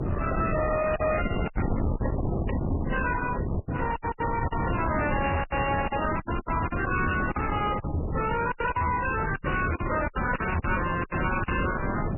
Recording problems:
lossy codec; AAC, then MP3, log-spectral distance 6 dB, nothing above 2.8 kHz
distorted audio; soft clipping, signal-to-distortion ratio 7 dB
wind on the microphone; below 820 Hz, SNR 2 dB
lost packets; 12% of the sound replaced, filled with silence

